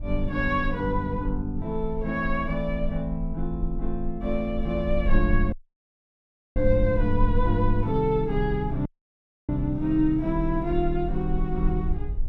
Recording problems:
low-frequency rumble; below 48 Hz, SNR 6 dB
dropout; at 5.5 s for 1 s and at 9 s for 0.5 s

